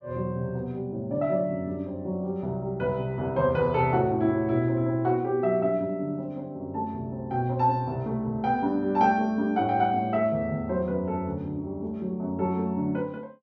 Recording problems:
treble cut off; nothing above 7.1 kHz

